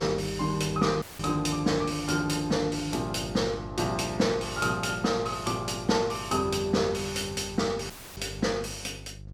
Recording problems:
hum; 50 Hz, harmonics up to 550 Hz, SNR 16 dB
audio cutting out; at 1 s and at 8 s; filled with static

